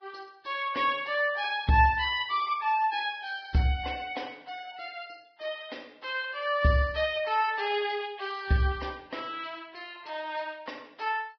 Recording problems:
lossy compression; Vorbis, log-spectral distance 4 dB

